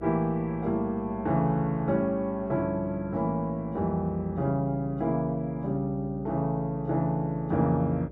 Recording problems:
hum; 60 Hz, harmonics up to 600 Hz, SNR 17 dB

